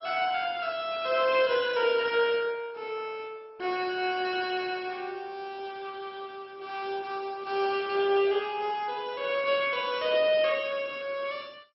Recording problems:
codec artefacts; MP2, log-spectral distance 4 dB, nothing above 5.5 kHz

